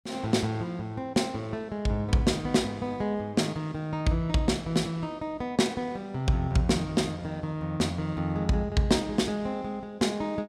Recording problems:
none

